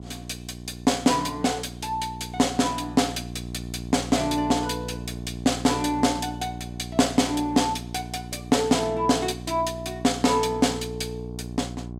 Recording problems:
hum; 60 Hz, harmonics up to 780 Hz, SNR 11 dB

